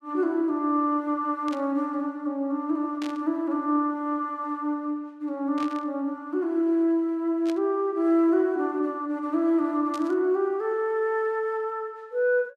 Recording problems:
static burst; 5 times, first at 1.5 s; peak -10 dB vs average level

